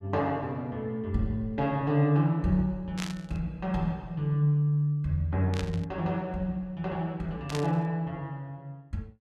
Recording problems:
burst of static; at 3 s, at 5.5 s and at 7.5 s; peak -2 dB vs average level

